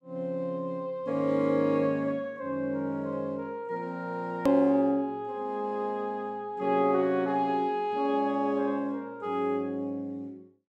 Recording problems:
click at an edit; at 4.5 s

